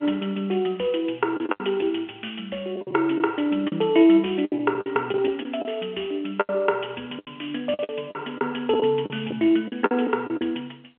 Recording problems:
telephone audio; 260 Hz to 3.4 kHz, G.711
packet loss; 10% of the sound replaced, filled with the last packet

